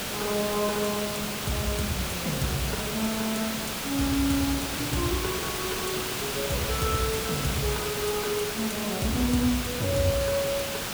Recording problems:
background hiss; slope -2 dB per octave, SNR 1 dB
crackling; at 8 s; loose cable, SNR 19 dB

